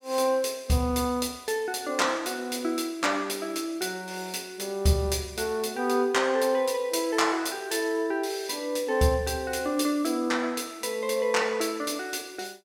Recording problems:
none

